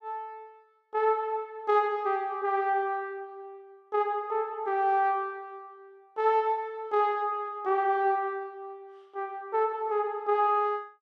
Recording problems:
none

